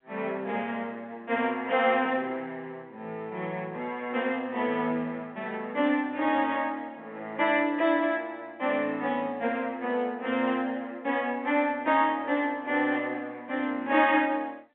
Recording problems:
phone line; 280 Hz to 3.7 kHz, G.711

